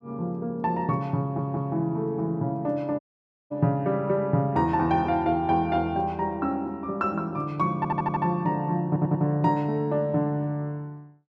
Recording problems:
audio stuttering; at 1 s, at 8 s and at 9 s
audio cutting out; at 3 s for 0.5 s

